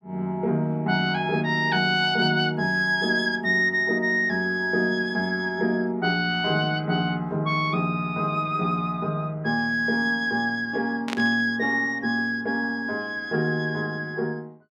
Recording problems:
burst of static; at 11 s; peak -3 dB vs average level

